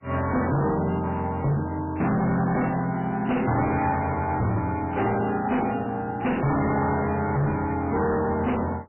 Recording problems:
codec artefacts; MP3, log-spectral distance 4 dB, nothing above 2.4 kHz
distorted audio; hard clipping, signal-to-distortion ratio 6 dB

